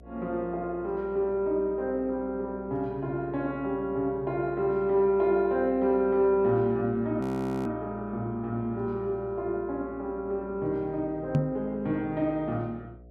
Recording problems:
electrical hum; 60 Hz, harmonics up to 720 Hz, SNR 22 dB
audio freezing; at 7 s
microphone thump; at 11 s; peak +7 dB vs average level

